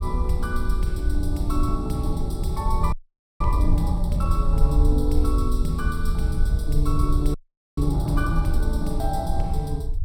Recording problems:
rumble; below 60 Hz, SNR -1 dB
frozen audio; at 3 s and at 7.5 s

